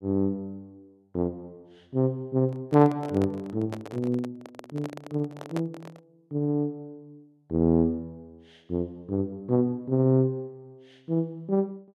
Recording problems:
handling noise; from 2.5 to 6 s; peak -3 dB vs average level

